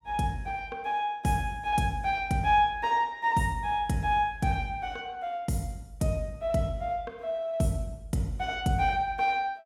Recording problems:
none

